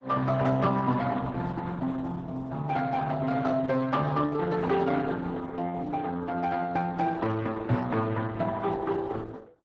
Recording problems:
codec artefacts; Speex, then Opus, log-spectral distance 3 dB, nothing above 7.3 kHz

